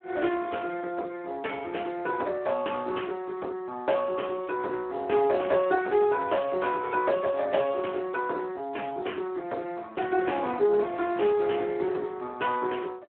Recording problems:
phone line; 260 Hz to 3.3 kHz, Speex

